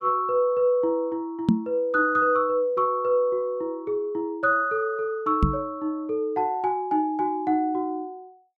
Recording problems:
knock on the microphone; at 1.5 s and at 5.5 s; peak +8 dB vs average level

